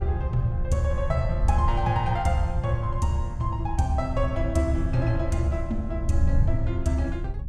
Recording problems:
wind on the microphone; below 94 Hz, SNR 3 dB

